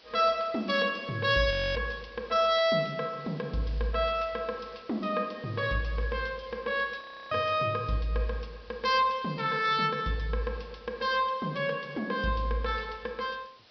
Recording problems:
treble missing; nothing above 5.5 kHz
background hiss; SNR 25 dB
frozen audio; at 1.5 s and at 7 s

